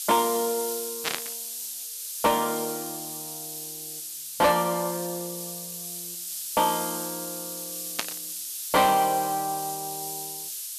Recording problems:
distortion; soft clipping, signal-to-distortion ratio 11 dB
hiss; SNR 6 dB
static burst; at 1 s and at 8 s; peak +4 dB vs average level

